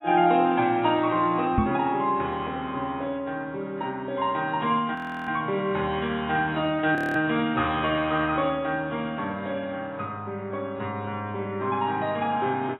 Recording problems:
lossy compression; AAC, log-spectral distance 2 dB, nothing above 15.6 kHz
microphone bump; at 1.5 s; peak +6 dB vs average level
frozen audio; at 5 s and at 7 s

